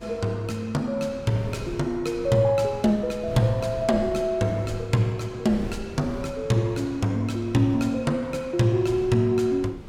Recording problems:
wind noise; below 270 Hz, SNR 16 dB

